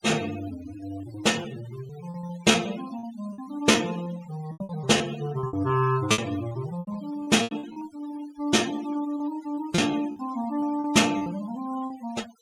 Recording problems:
noise reduction artefacts; signal-to-artefact ratio 17 dB
lost packets; 10% of the sound replaced, filled with repeated pitch periods

